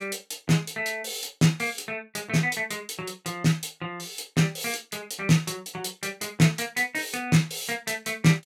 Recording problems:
none

